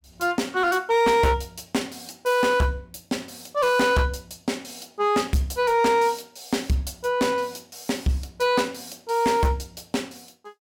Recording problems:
distorted audio; hard clipping, signal-to-distortion ratio 11 dB

